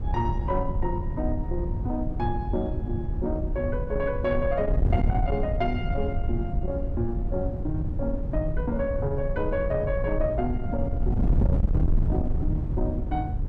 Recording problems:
distorted audio; soft clipping, signal-to-distortion ratio 11 dB
wind noise; below 110 Hz, SNR 0 dB

